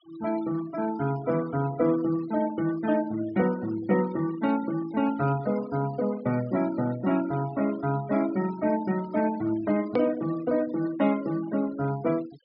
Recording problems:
low-pass filter; nothing above 5.5 kHz
denoising artefacts; signal-to-artefact ratio 19 dB
hard cut with a click; at 10 s

